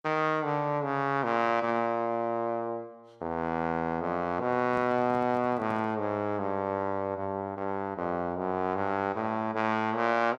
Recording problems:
handling noise; from 4.5 to 6 s; peak -8 dB vs average level

